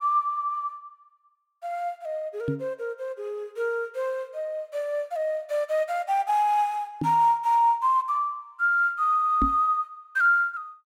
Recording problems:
microphone thump; at 2.5 s, at 7 s and at 9.5 s; peak +1 dB vs average level

